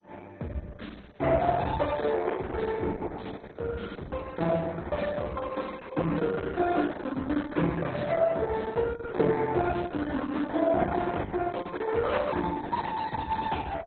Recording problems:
lossy compression; Opus, then MP2, log-spectral distance 4 dB, nothing above 3.9 kHz

